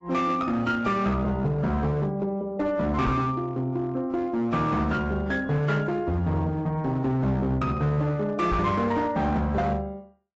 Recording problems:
codec artefacts; AAC, log-spectral distance 2 dB, nothing above 7.6 kHz
distorted audio; hard clipping, uneven, signal-to-distortion ratio 12 dB
knock on the microphone; at 3 s and at 8.5 s; peak +1 dB vs average level

